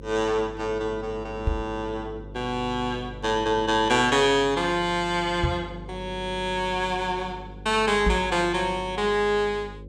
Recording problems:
hum; 50 Hz, harmonics up to 550 Hz, SNR 16 dB
microphone bump; at 1.5 s, at 5.5 s and at 8 s; peak +4 dB vs average level

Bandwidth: 16.5 kHz